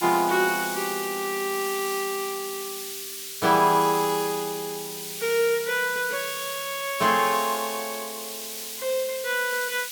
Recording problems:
hiss; SNR 7 dB

